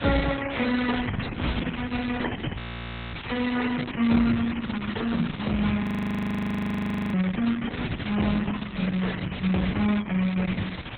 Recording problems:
codec artefacts; MP3, then Opus, log-spectral distance 14 dB, nothing above 19.5 kHz
hum; 60 Hz, harmonics up to 1.7 kHz, SNR 25 dB
background hiss; SNR 11 dB
low-frequency rumble; below 170 Hz, SNR 14 dB
frozen audio; at 2.5 s for 0.5 s and at 6 s for 1.5 s

